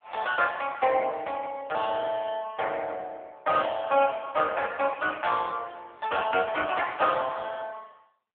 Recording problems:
phone line; 320 Hz to 3.5 kHz, AMR-NB

